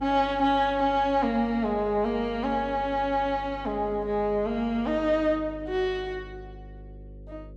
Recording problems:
hum; 50 Hz, harmonics up to 550 Hz, SNR 18 dB

